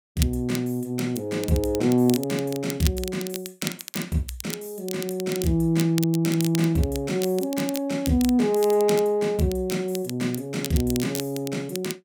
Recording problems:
crackling; vinyl, SNR 11 dB

